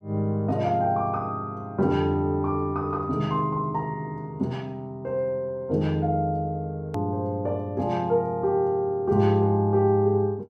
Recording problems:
hard cut with a click; at 7 s

